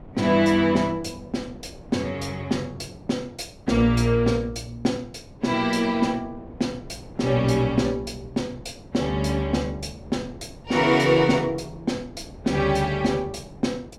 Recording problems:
wind on the microphone; below 430 Hz, SNR 20 dB

